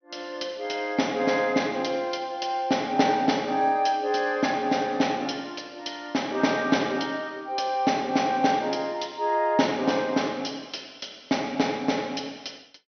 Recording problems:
low-pass filter; nothing above 6.1 kHz

